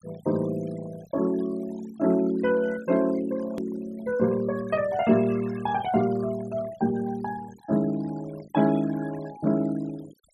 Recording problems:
noise reduction artefacts; signal-to-artefact ratio 19 dB
click at an edit; at 3.5 s

